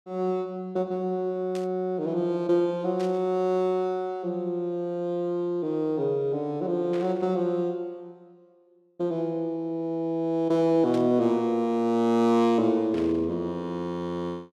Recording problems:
burst of static; 5 times, first at 1.5 s; peak -12 dB vs average level

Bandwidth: 14 kHz